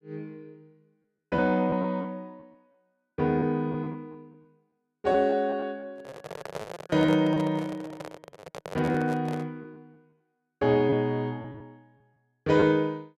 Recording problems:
lost packets; 8% of the sound replaced, filled with repeated pitch periods
handling noise; from 6 to 9.5 s; peak -4 dB vs average level

